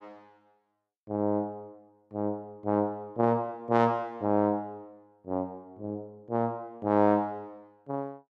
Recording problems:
none

